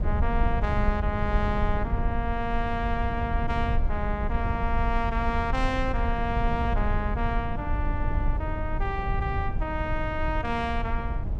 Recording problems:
rumble; below 84 Hz, SNR 0 dB

